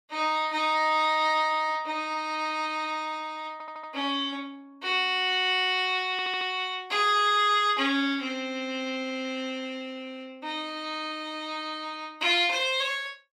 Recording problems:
stutter; at 3.5 s and at 6 s

